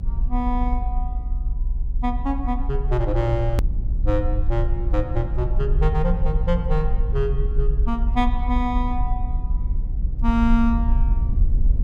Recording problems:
low-frequency rumble; below 54 Hz, strongest tone 32 Hz, SNR -1 dB
click at an edit; at 3.5 s

